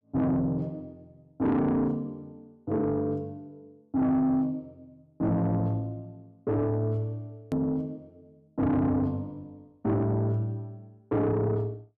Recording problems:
distorted audio; soft clipping, signal-to-distortion ratio 11 dB
hard cut with a click; at 7.5 s

